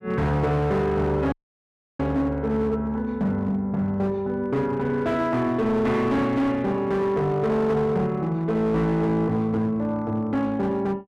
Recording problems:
distorted audio; hard clipping, signal-to-distortion ratio 11 dB
audio cutting out; at 1.5 s for 0.5 s

